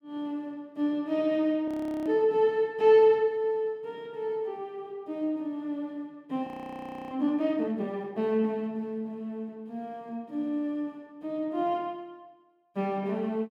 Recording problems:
frozen audio; at 1.5 s and at 6.5 s for 0.5 s

